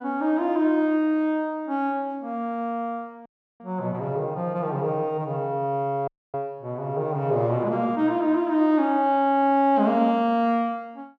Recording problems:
dropout; at 3.5 s and at 6 s

